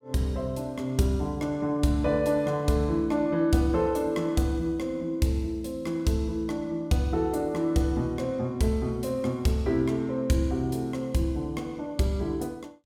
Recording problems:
none

